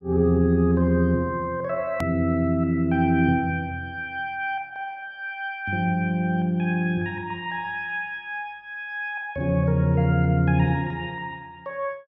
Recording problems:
click at an edit; at 2 s

